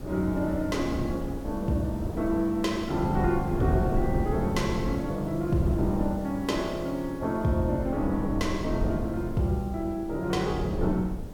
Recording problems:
hiss; slope -4 dB per octave, SNR 24 dB
wind on the microphone; below 270 Hz, SNR 5 dB

